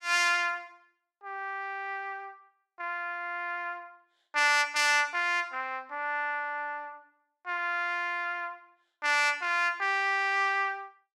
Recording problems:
none

